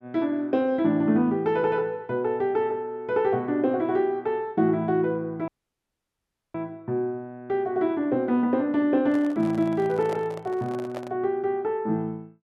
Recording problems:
dropout; at 5.5 s for 1 s
handling noise; from 9 to 11 s; peak -6 dB vs average level

